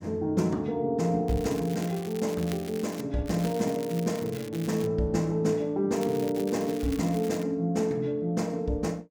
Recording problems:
crackling; from 1.5 to 3 s, from 3.5 to 5 s and from 6 to 7.5 s; loose cable, SNR 16 dB

